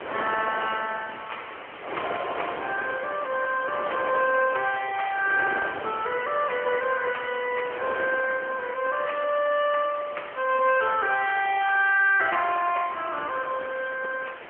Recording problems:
phone line; 300 Hz to 3.2 kHz, AMR-NB
background hiss; SNR 18 dB
wind noise; below 1.4 kHz, SNR 12 dB

